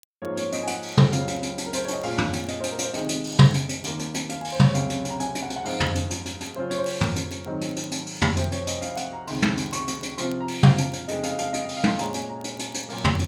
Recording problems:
crackle; vinyl, SNR 30 dB

